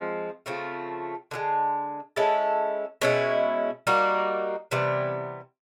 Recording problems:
none

